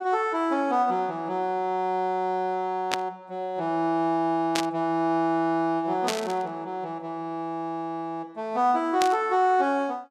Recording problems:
static burst; 4 times, first at 3 s; peak +3 dB vs average level

